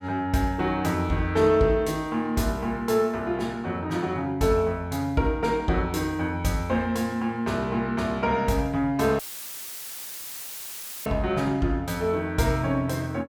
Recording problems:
dropout; at 9 s for 2 s; filled with static

